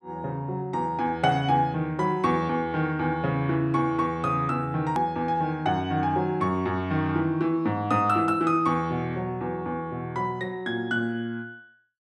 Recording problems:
hard cut with a click; at 5 s

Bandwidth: 12 kHz